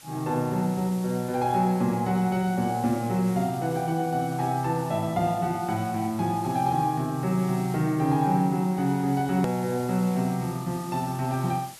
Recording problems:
background hiss; slope +1 dB per octave, SNR 19 dB
hard cut with a click; at 9.5 s

